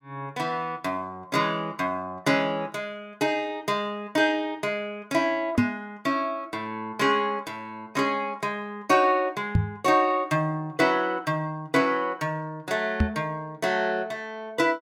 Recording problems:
knock on the microphone; at 5.5 s, at 9.5 s and at 13 s; peak +8 dB vs average level

